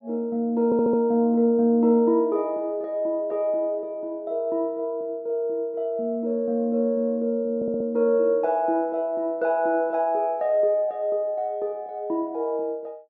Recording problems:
stutter; at 0.5 s and at 7.5 s

